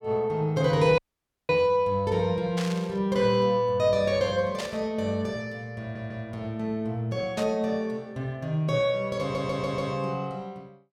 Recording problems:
audio cutting out; at 1 s for 0.5 s
static burst; at 2.5 s, at 4.5 s and at 7.5 s; peak -4 dB vs average level
audio stuttering; at 6 s and at 9 s

